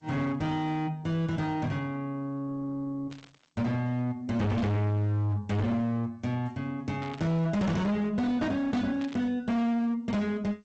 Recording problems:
lossy codec; Opus, then G.722, log-spectral distance 2 dB
distorted audio; hard clipping, signal-to-distortion ratio 6 dB
burst of static; 4 times, first at 3 s; peak -12 dB vs average level

